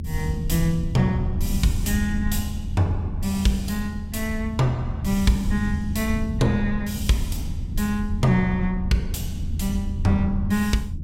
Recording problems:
rumble; below 110 Hz, SNR 4 dB

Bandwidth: 16 kHz